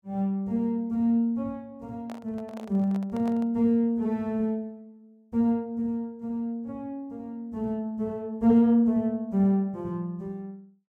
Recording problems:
microphone handling noise; from 2 to 3.5 s; peak -11 dB vs average level

